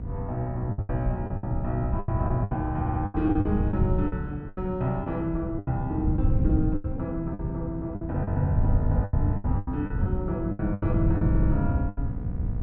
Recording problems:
hum; 60 Hz, harmonics up to 960 Hz, SNR 10 dB
wind noise; below 120 Hz, SNR 0 dB
packet loss; 13% of the sound replaced, filled with the last packet
stutter; at 3 s and at 11 s

